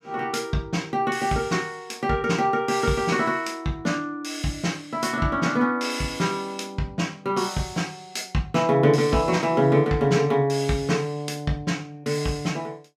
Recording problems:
none

